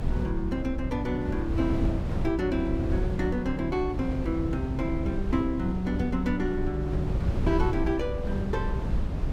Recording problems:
rumble; below 60 Hz, strongest tone 58 Hz, SNR 9 dB
wind noise; below 160 Hz, SNR 3 dB

